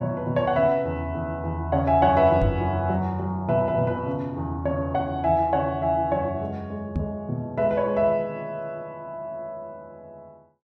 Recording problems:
knock on the microphone; at 2.5 s and at 7 s; peak +2 dB vs average level

